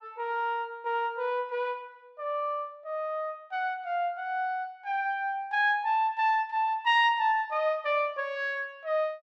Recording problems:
none

